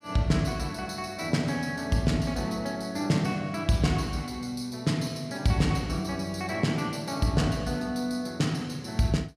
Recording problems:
none

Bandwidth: 15.5 kHz